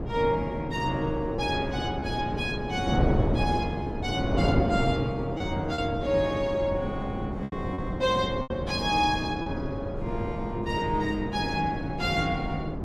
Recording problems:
wind on the microphone; below 390 Hz, SNR 2 dB
packet loss; 3% of the sound replaced, filled with repeated pitch periods

